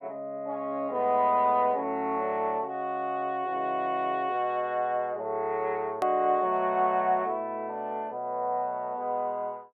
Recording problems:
hard cut with a click; at 6 s

